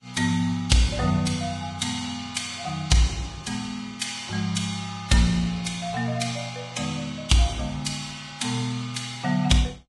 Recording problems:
codec artefacts; Vorbis, log-spectral distance 5 dB, nothing above 10.4 kHz

